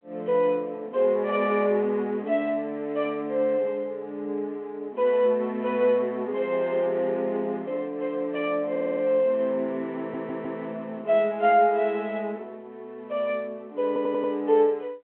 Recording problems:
telephone audio; 240 Hz to 3.3 kHz, G.726
stutter; at 8.5 s, at 10 s and at 14 s

